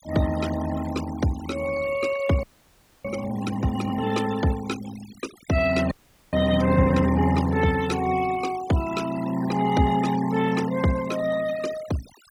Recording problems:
noise reduction artefacts; signal-to-artefact ratio 14 dB
frozen audio; at 2.5 s for 0.5 s and at 6 s

